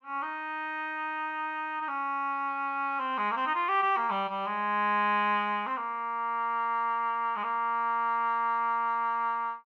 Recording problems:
none

